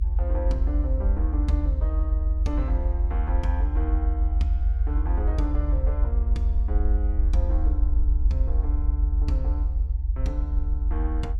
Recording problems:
low-frequency rumble; below 70 Hz, strongest tone 50 Hz, SNR -10 dB

